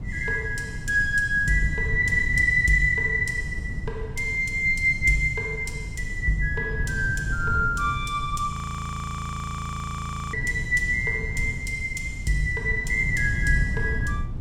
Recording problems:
wind noise; below 140 Hz, SNR 8 dB
frozen audio; at 8.5 s for 2 s

